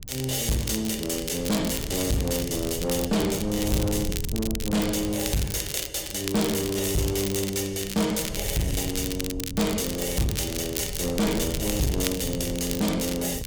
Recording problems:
distorted audio; soft clipping, signal-to-distortion ratio 7 dB
wind noise; below 140 Hz, SNR 10 dB
crackling; vinyl, SNR 8 dB

